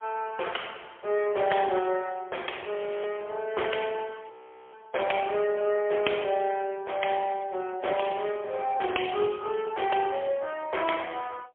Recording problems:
telephone audio; 320 Hz to 3.3 kHz, AMR-NB, then MP3
audio freezing; at 3 s and at 4.5 s

